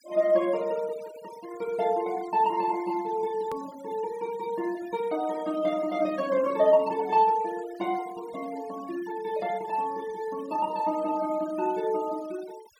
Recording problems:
noise reduction artefacts; signal-to-artefact ratio 20 dB
edit click; at 3.5 s

